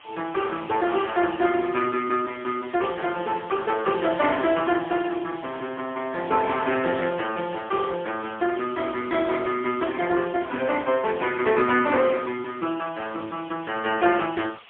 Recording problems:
telephone audio; 280 Hz to 3.4 kHz, AMR-NB, then MP3
background hiss; SNR 22 dB

